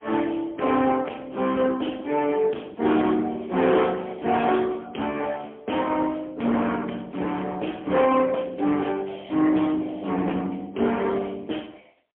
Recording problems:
phone line; 220 Hz to 3.3 kHz, AMR-NB, then MP3
distorted audio; hard clipping, signal-to-distortion ratio 13 dB

